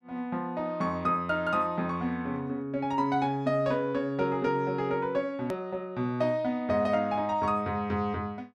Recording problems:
click at an edit; at 5.5 s

